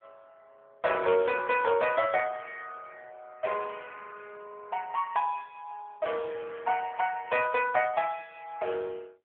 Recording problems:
telephone audio; 390 Hz to 2.8 kHz, AMR-NB

